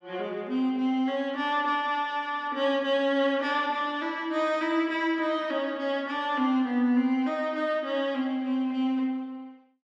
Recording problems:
none

